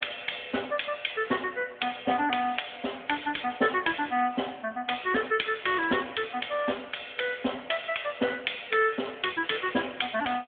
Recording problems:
phone line; 260 Hz to 3.6 kHz, AMR-NB

